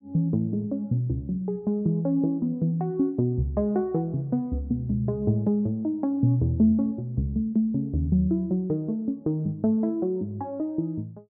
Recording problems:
none

